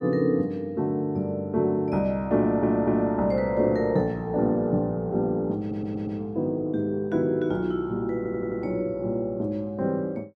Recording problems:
audio stuttering; at 2.5 s, at 5.5 s and at 8 s

